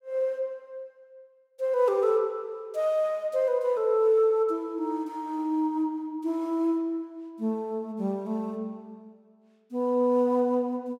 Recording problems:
none

